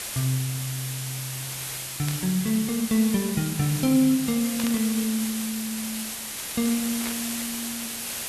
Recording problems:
hiss; slope 0 dB per octave, SNR 5 dB
burst of static; at 2 s, at 4.5 s and at 7 s; peak -4 dB vs average level

